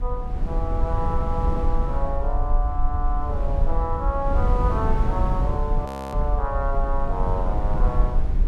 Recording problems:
low-frequency rumble; below 46 Hz, strongest tone 26 Hz, SNR 0 dB
wind noise; below 92 Hz, SNR -2 dB
frozen audio; at 6 s

